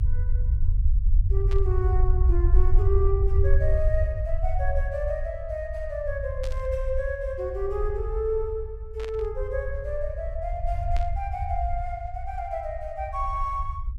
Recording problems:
rumble; below 66 Hz, SNR -3 dB
static burst; 4 times, first at 1.5 s; peak -6 dB vs average level

